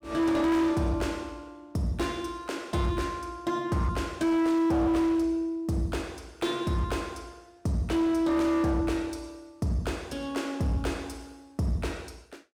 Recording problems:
distorted audio; hard clipping, signal-to-distortion ratio 8 dB

